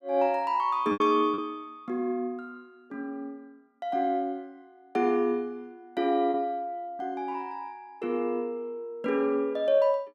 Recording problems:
packet loss; 2% of the sound replaced, filled with repeated pitch periods

